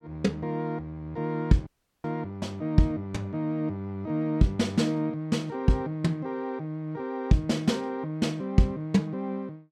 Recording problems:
audio cutting out; at 1.5 s

